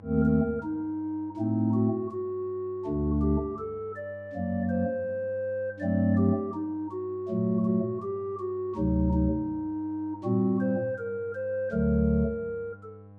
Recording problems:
hum; 50 Hz, harmonics up to 1.1 kHz, SNR 20 dB

